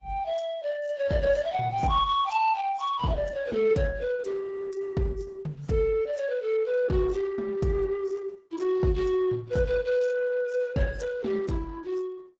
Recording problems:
lossy codec; AAC, then Opus, log-spectral distance 3 dB, nothing above 7.3 kHz

